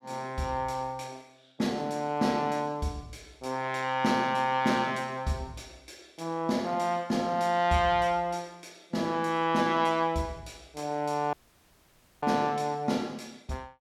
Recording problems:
audio cutting out; at 11 s for 1 s

